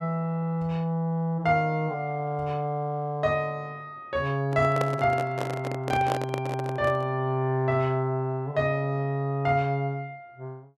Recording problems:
microphone handling noise; from 4.5 to 7 s; peak +2 dB vs average level

